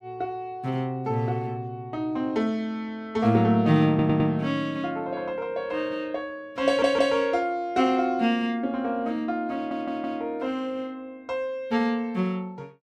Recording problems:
audio stuttering; at 4 s, at 6.5 s and at 9.5 s

